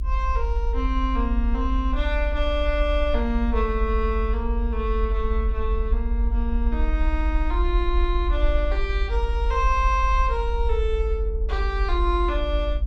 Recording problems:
electrical hum; 60 Hz, harmonics up to 1.1 kHz, SNR 20 dB
rumble; below 60 Hz, strongest tone 46 Hz, SNR -1 dB

